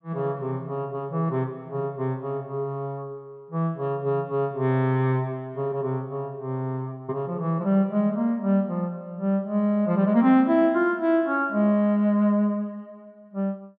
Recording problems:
none

